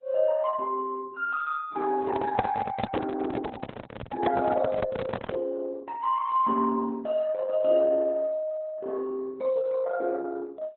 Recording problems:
lossy codec; AAC, then Opus, log-spectral distance 3 dB
handling noise; from 2 to 5.5 s; peak +3 dB vs average level

